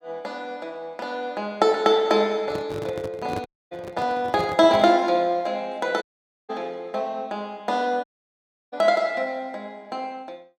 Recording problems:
handling noise; from 2.5 to 5 s; peak -4 dB vs average level
audio cutting out; at 3.5 s, at 6 s and at 8 s for 0.5 s

